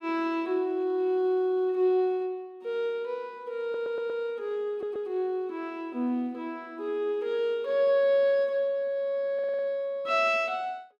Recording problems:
stutter; at 3.5 s, at 4.5 s and at 9.5 s

